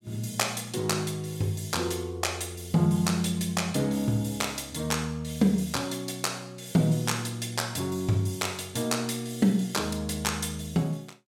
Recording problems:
none

